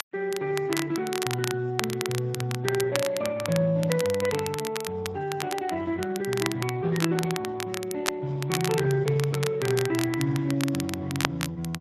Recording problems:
codec artefacts; AAC, then Speex, log-spectral distance 2 dB
crackling; vinyl, SNR 7 dB

